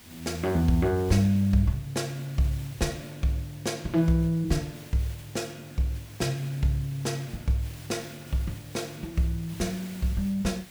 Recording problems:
hiss; slope -1 dB per octave, SNR 19 dB

